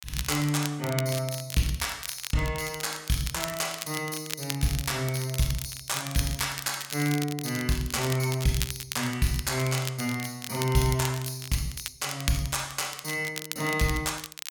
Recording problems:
crackle; vinyl, SNR 8 dB

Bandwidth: 18 kHz